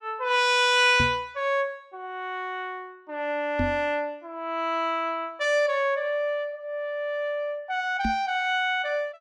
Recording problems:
microphone bump; at 1 s, at 3.5 s and at 8 s; peak +1 dB vs average level

